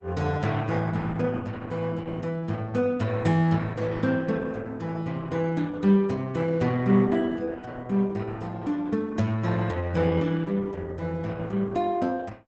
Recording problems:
lossy codec; Opus, log-spectral distance 3 dB, nothing above 8 kHz

